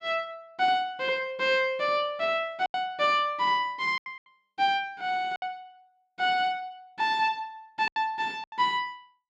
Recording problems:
lost packets; 5% of the sound replaced, filled with silence

